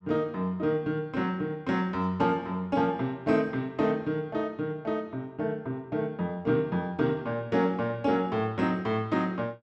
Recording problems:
none

